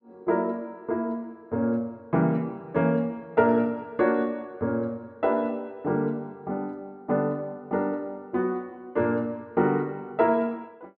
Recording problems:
none

